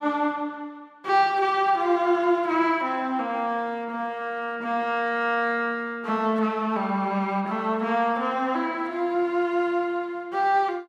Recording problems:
none

